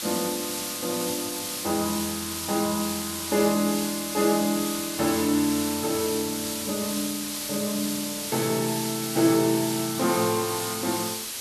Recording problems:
background hiss; SNR 3 dB

